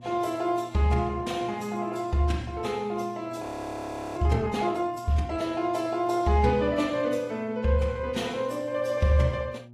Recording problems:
lossy codec; AAC, log-spectral distance 2 dB
hum; 60 Hz, harmonics up to 600 Hz, SNR 22 dB
audio freezing; at 3.5 s for 0.5 s

